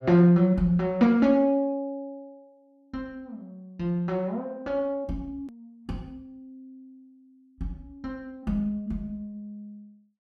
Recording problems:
edit click; at 5.5 s

